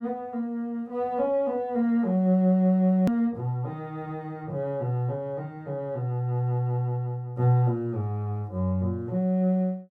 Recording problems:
click at an edit; at 3 s

